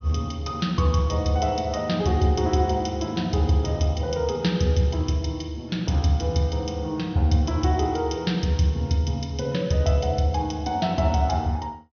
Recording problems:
treble cut off; nothing above 6.1 kHz

